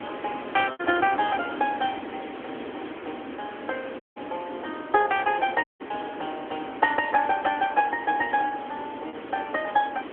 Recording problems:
phone line; 220 Hz to 3.4 kHz, AMR-NB
background hiss; SNR 11 dB
lost packets; 3% of the sound replaced, filled with repeated pitch periods
dropout; at 4 s and at 5.5 s

